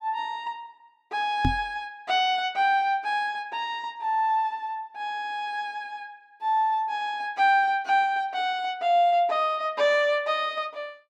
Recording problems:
microphone thump; at 1.5 s; peak +4 dB vs average level

